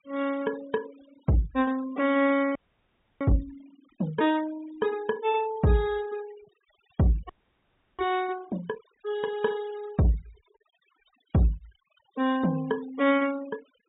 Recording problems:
treble missing; nothing above 4 kHz
noise reduction artefacts; signal-to-artefact ratio 20 dB
audio freezing; at 2.5 s for 0.5 s and at 7.5 s for 0.5 s

